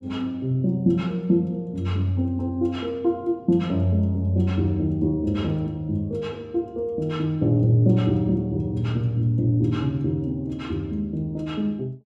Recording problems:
none

